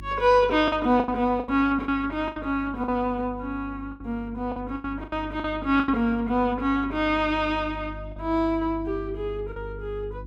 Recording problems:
hum; 50 Hz, harmonics up to 350 Hz, SNR 15 dB
lost packets; 8% of the sound replaced, filled with the last packet

